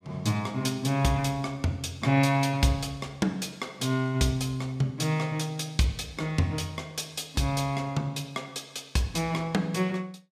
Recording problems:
none

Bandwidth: 15 kHz